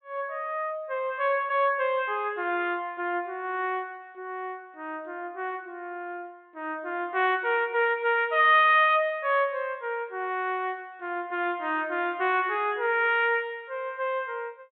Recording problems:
treble missing; nothing above 4 kHz

